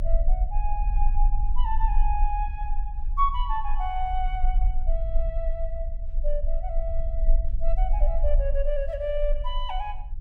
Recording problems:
rumble; below 36 Hz, strongest tone 22 Hz, SNR -3 dB

